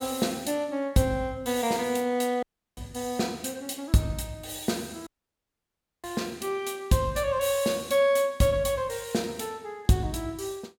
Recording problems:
dropout; at 2.5 s and at 5 s for 1 s

